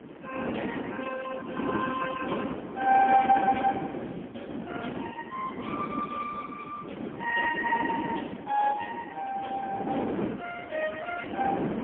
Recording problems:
telephone audio; 260 Hz to 2.3 kHz, AMR-NB, then MP3
wind on the microphone; below 510 Hz, SNR 5 dB

